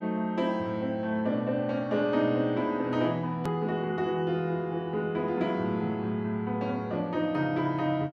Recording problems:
edit click; at 3.5 s

